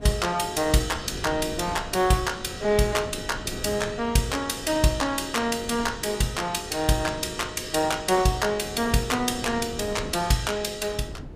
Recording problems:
wind on the microphone; below 310 Hz, SNR 15 dB

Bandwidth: 15.5 kHz